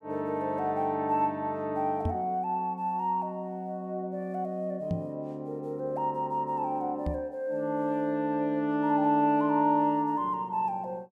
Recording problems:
microphone thump; at 2 s, at 5 s and at 7 s; peak +2 dB vs average level

